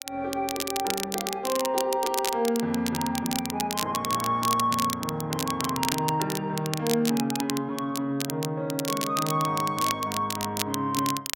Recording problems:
crackle; vinyl, SNR 5 dB

